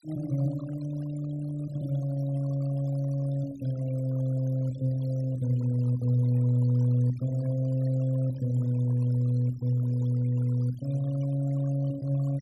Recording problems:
noise reduction artefacts; signal-to-artefact ratio 21 dB

